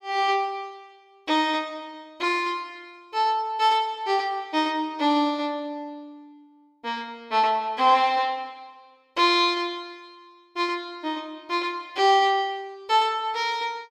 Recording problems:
none

